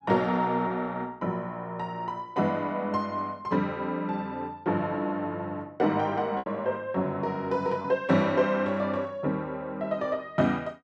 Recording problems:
packet loss; 1.1% of the sound replaced, filled with repeated pitch periods

